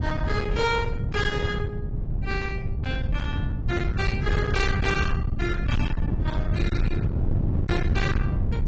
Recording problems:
codec artefacts; AAC, log-spectral distance 2 dB, nothing above 7.6 kHz
distortion; hard clipping, uneven, signal-to-distortion ratio 7 dB
wind noise; below 150 Hz, SNR -2 dB

